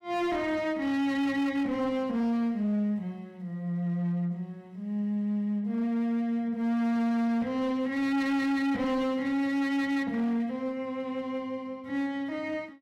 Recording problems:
distortion; hard clipping, uneven, signal-to-distortion ratio 10 dB

